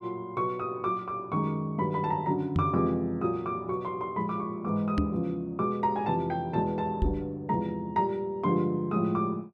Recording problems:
knock on the microphone; at 2.5 s, at 5 s and at 7 s; peak +6 dB vs average level

